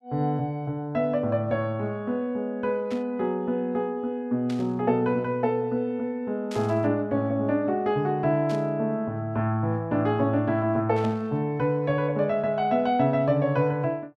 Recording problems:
burst of static; 5 times, first at 3 s; peak -11 dB vs average level

